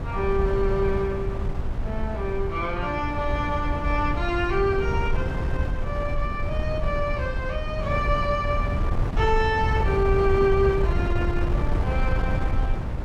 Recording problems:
wind noise; below 120 Hz, SNR 1 dB

